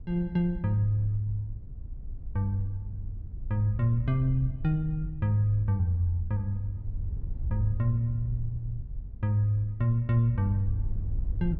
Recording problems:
wind noise; below 74 Hz, SNR 10 dB

